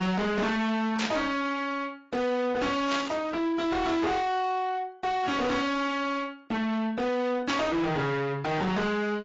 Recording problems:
lossy codec; AAC, log-spectral distance 2 dB, nothing above 7.3 kHz
distortion; soft clipping, signal-to-distortion ratio 6 dB
static burst; at 1 s, at 3 s and at 7.5 s; peak +1 dB vs average level

